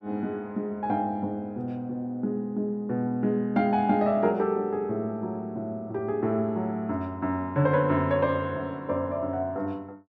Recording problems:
none

